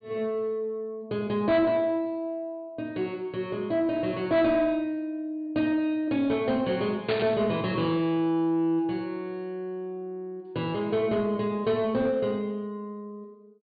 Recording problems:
treble missing; nothing above 4.7 kHz
distorted audio; soft clipping, signal-to-distortion ratio 12 dB
static burst; at 7 s; peak -1 dB vs average level

